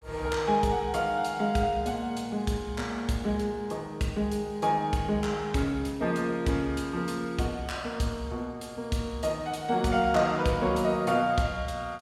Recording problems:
none

